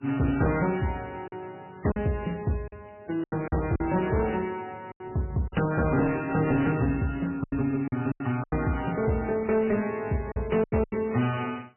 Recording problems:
codec artefacts; MP3, log-spectral distance 5 dB, nothing above 2.7 kHz
distortion; hard clipping, uneven, signal-to-distortion ratio 10 dB
packet loss; 8% of the sound replaced, filled with silence

